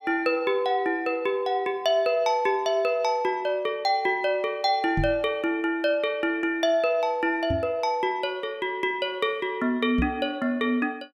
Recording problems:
knock on the microphone; at 5 s, at 7.5 s and at 10 s; peak +1 dB vs average level

